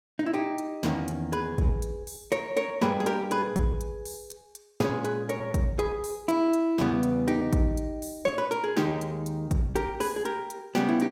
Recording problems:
packet loss; 5% of the sound replaced, filled with repeated pitch periods

